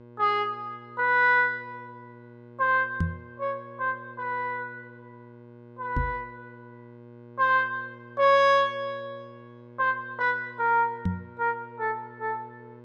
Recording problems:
hum; 60 Hz, harmonics up to 1.6 kHz, SNR 22 dB
microphone thump; at 3 s, at 6 s and at 11 s; peak +3 dB vs average level

